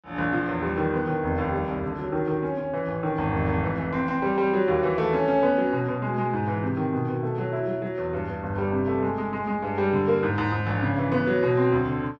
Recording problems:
none

